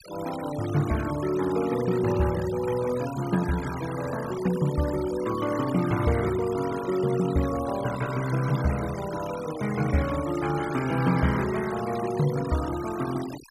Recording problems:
noise reduction artefacts; signal-to-artefact ratio 13 dB

